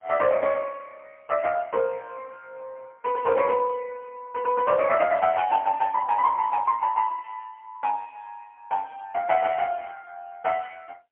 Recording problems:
phone line; 300 Hz to 2.6 kHz, AMR-NB, then MP3

